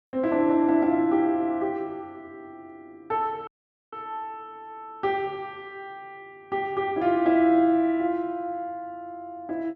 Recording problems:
audio cutting out; at 3.5 s

